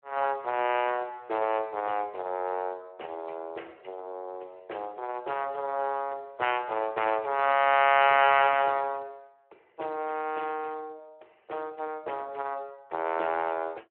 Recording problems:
phone line; 320 Hz to 3.1 kHz, Speex

